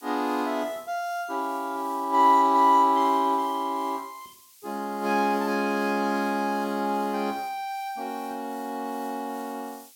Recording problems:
hiss; SNR 24 dB

